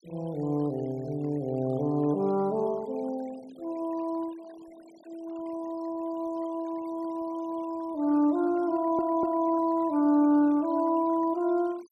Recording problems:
noise reduction artefacts; signal-to-artefact ratio 25 dB
audio stuttering; at 8.5 s

